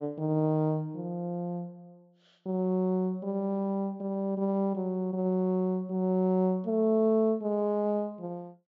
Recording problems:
low-pass filter; nothing above 7.4 kHz

